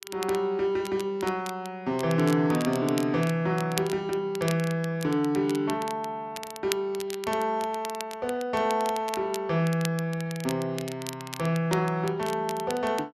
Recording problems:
crackling; vinyl, SNR 13 dB

